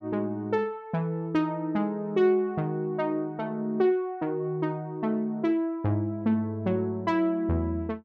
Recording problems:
none

